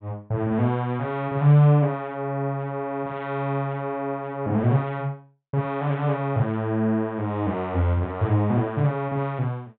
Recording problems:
treble missing; nothing above 4 kHz

